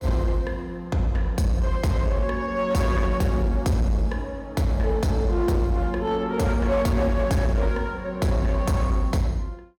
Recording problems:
distortion; hard clipping, uneven, signal-to-distortion ratio 12 dB

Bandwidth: 17 kHz